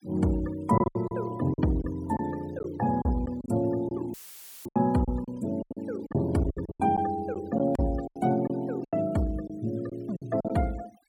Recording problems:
noise reduction artefacts; signal-to-artefact ratio 23 dB
packet loss; 12% of the sound replaced, filled with silence
audio cutting out; at 4 s for 0.5 s; filled with static

